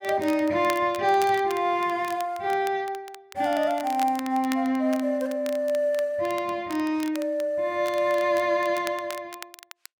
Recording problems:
crackle; vinyl, SNR 18 dB

